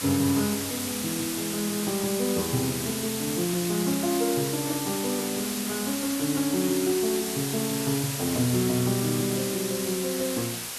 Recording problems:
hiss; slope +1 dB per octave, SNR 3 dB

